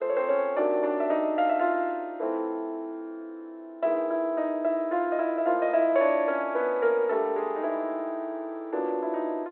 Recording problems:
telephone audio; 300 Hz to 3.4 kHz, G.726

